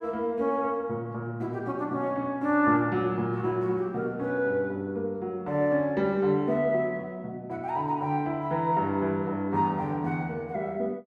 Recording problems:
none

